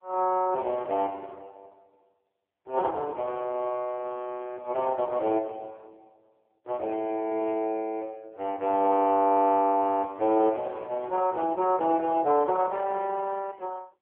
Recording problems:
telephone audio; 280 Hz to 3.3 kHz, AMR-NB

